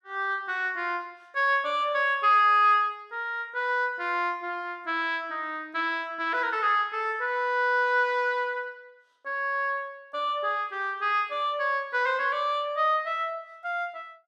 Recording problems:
none

